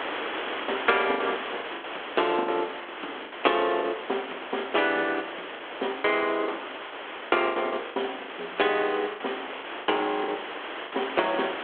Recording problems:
telephone audio; 280 Hz to 3.5 kHz, G.726
hiss; SNR 8 dB
packet loss; 10% of the sound replaced, filled with the last packet

